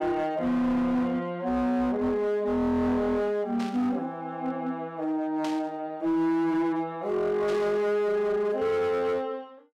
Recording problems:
distorted audio; hard clipping, signal-to-distortion ratio 11 dB
static burst; at 3.5 s, at 5.5 s and at 7.5 s; peak -8 dB vs average level

